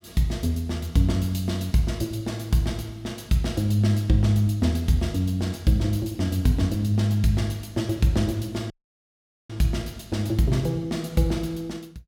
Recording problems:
dropout; at 8.5 s for 1 s

